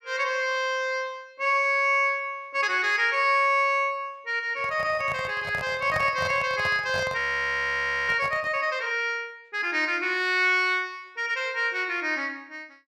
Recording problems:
handling noise; from 4.5 to 8.5 s; peak -4 dB vs average level
audio freezing; at 7 s for 1 s

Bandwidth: 14 kHz